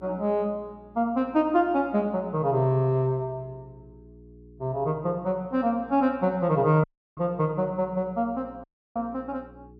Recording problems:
hum; 60 Hz, harmonics up to 420 Hz, SNR 25 dB
audio cutting out; at 7 s and at 8.5 s

